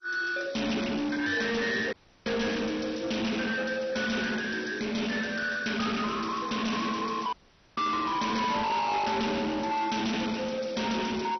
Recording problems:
codec artefacts; MP2, log-spectral distance 7 dB, nothing above 6 kHz
distortion; soft clipping, signal-to-distortion ratio 6 dB
dropout; at 2 s and at 7.5 s

